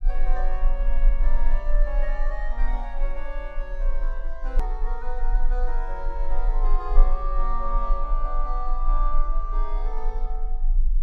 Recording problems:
rumble; below 32 Hz, strongest tone 20 Hz, SNR -7 dB
hard cut with a click; at 4.5 s

